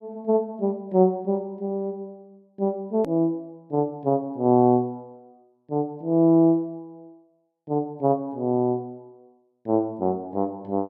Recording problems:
click at an edit; at 3 s

